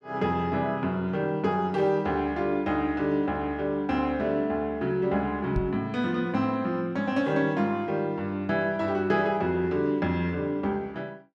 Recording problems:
microphone bump; at 5.5 s; peak +1 dB vs average level

